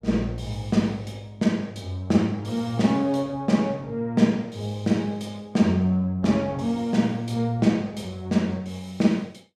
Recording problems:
none

